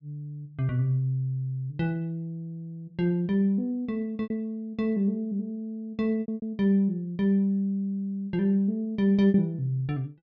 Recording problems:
lost packets; 3% of the sound replaced, filled with repeated pitch periods

